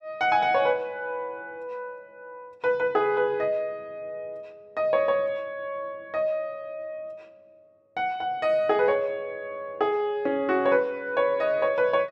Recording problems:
none

